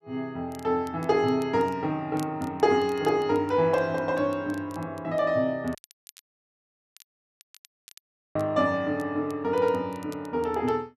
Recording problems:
crackle; vinyl, SNR 27 dB
dropout; at 6 s for 2.5 s

